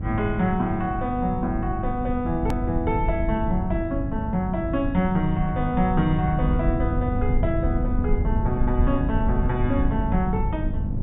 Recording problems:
treble cut off; nothing above 4 kHz
hum; 50 Hz, harmonics up to 600 Hz, SNR 9 dB
rumble; below 100 Hz, SNR 3 dB
click at an edit; at 2.5 s

